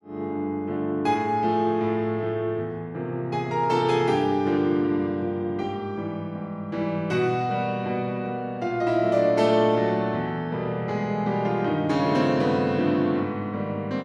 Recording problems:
none

